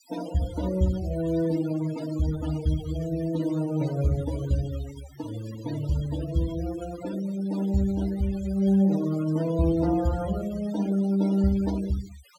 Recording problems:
denoising artefacts; signal-to-artefact ratio 16 dB

